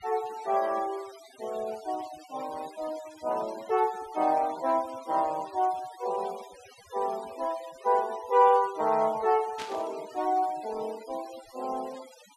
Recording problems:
noise reduction artefacts; signal-to-artefact ratio 19 dB
static burst; at 9.5 s; peak -5 dB vs average level

